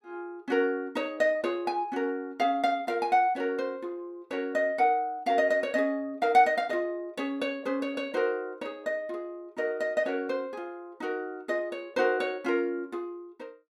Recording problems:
none

